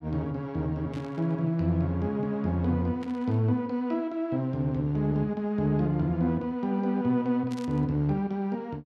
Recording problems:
static burst; at 1 s, at 3 s and at 7.5 s; peak -14 dB vs average level

